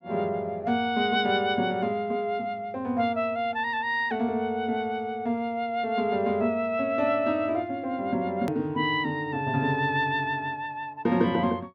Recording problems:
edit click; at 8.5 s

